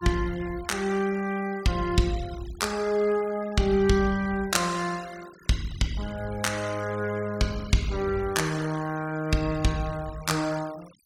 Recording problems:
noise reduction artefacts; signal-to-artefact ratio 19 dB

